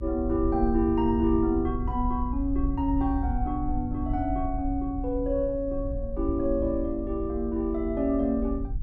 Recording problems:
hum; 60 Hz, harmonics up to 300 Hz, SNR 18 dB
low-frequency rumble; below 68 Hz, SNR 6 dB

